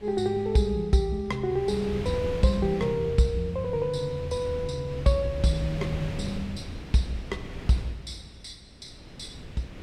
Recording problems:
wind noise; below 370 Hz, SNR 11 dB

